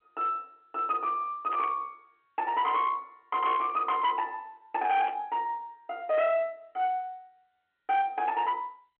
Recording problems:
telephone audio; 300 Hz to 3.3 kHz, G.711
distortion; hard clipping, uneven, signal-to-distortion ratio 10 dB
static burst; at 1.5 s, at 3.5 s and at 5 s; peak -10 dB vs average level

